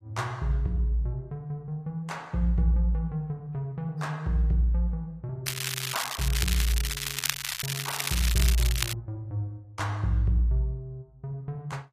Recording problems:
codec artefacts; AAC, log-spectral distance 3 dB, nothing above 15.1 kHz
crackling; from 5.5 to 9 s; loose cable, SNR 1 dB

